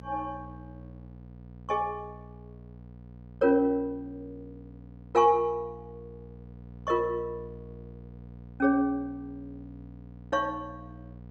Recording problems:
mains hum; 60 Hz, harmonics up to 960 Hz, SNR 18 dB

